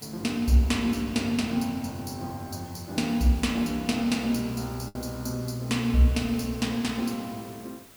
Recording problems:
hiss; slope -3 dB per octave, SNR 20 dB
lost packets; 0.9% of the sound replaced, filled with the last packet

